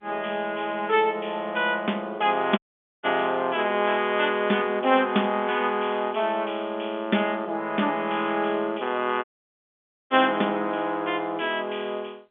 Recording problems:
phone line; 190 Hz to 3.5 kHz, G.711
audio cutting out; at 2.5 s and at 9 s for 1 s

